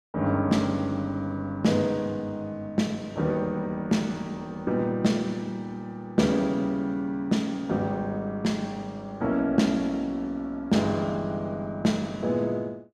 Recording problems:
none

